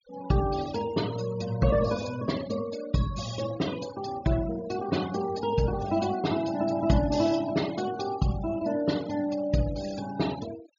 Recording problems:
treble missing; nothing above 7 kHz
noise reduction artefacts; signal-to-artefact ratio 15 dB

